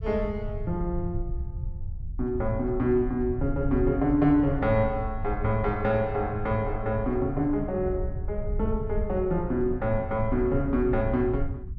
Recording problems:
rumble; below 84 Hz, SNR 8 dB

